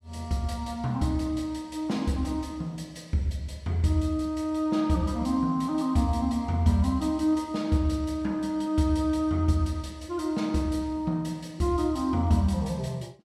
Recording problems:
none

